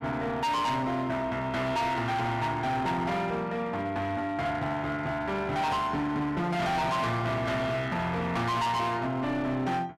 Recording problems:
distorted audio; hard clipping, uneven, signal-to-distortion ratio 7 dB

